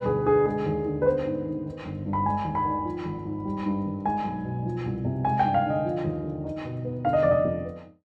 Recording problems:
none

